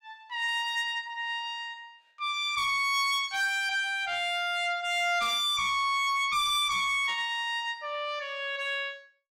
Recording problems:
distortion; soft clipping, signal-to-distortion ratio 10 dB

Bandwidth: 16 kHz